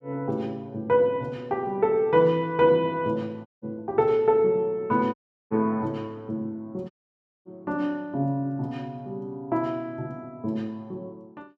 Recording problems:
audio cutting out; at 3.5 s, at 5 s and at 7 s for 0.5 s

